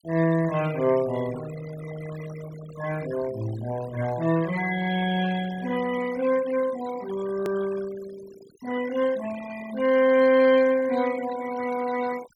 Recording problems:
denoising artefacts; signal-to-artefact ratio 16 dB
click at an edit; at 7.5 s

